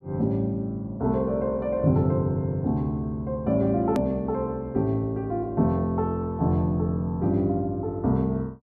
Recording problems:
hard cut with a click; at 4 s

